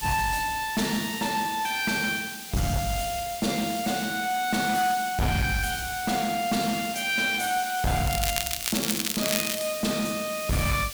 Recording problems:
distorted audio; hard clipping, uneven, signal-to-distortion ratio 7 dB
background hiss; slope +3 dB per octave, SNR 9 dB
crackle; from 8 to 9.5 s; loose cable, SNR 1 dB

